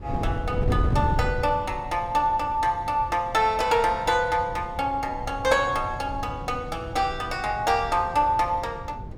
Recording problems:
wind noise; below 160 Hz, SNR 9 dB

